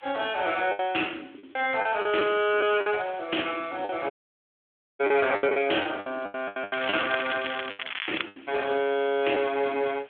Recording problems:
telephone audio; 240 Hz to 3.5 kHz, Speex
background hiss; SNR 27 dB
packet loss; 11% of the sound replaced, filled with the last packet
dropout; at 4 s for 1 s
crackling; from 6.5 to 8 s; loose cable, SNR 6 dB

